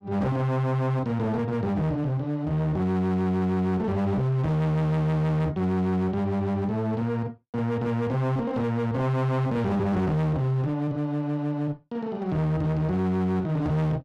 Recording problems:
distorted audio; hard clipping, uneven, signal-to-distortion ratio 7 dB

